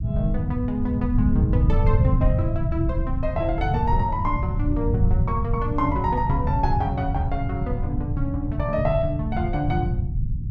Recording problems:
low-frequency rumble; below 130 Hz, SNR -2 dB

